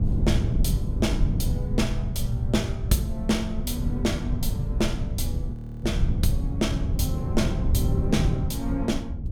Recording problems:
low-frequency rumble; below 84 Hz, SNR 4 dB
wind noise; below 150 Hz, SNR 1 dB
frozen audio; at 5.5 s

